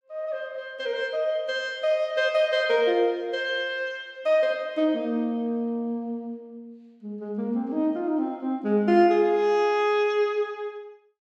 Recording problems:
none

